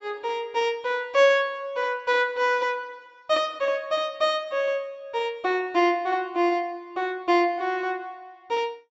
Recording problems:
low-pass filter; nothing above 8 kHz

